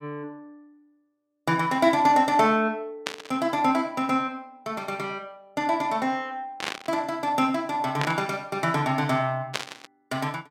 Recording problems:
burst of static; 4 times, first at 3 s; peak +2 dB vs average level

